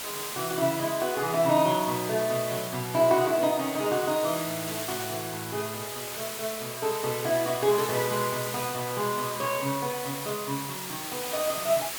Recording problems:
background hiss; slope 0 dB per octave, SNR 6 dB

